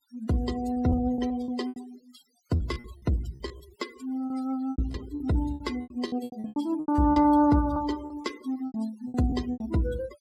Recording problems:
denoising artefacts; signal-to-artefact ratio 18 dB
lost packets; 16% of the sound replaced, filled with repeated pitch periods

